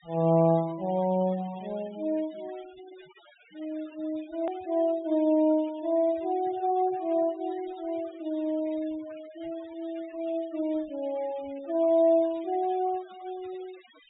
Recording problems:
low-pass filter; nothing above 4 kHz
noise reduction artefacts; signal-to-artefact ratio 24 dB
hard cut with a click; at 4.5 s

